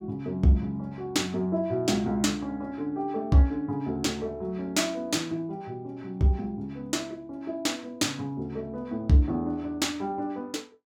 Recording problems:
none

